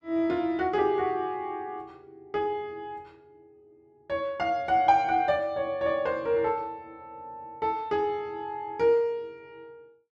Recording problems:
none

